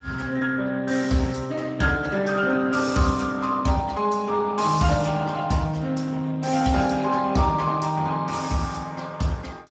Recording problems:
lossy compression; Speex, log-spectral distance 4 dB, nothing above 7.6 kHz

